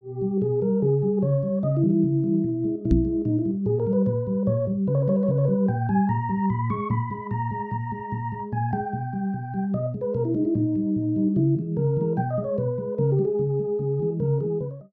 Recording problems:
microphone bump; at 3 s; peak +7 dB vs average level

